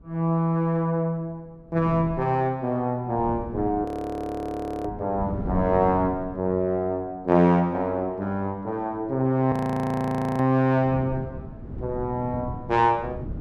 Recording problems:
wind noise; below 230 Hz, SNR 12 dB
frozen audio; at 4 s for 1 s and at 9.5 s for 1 s

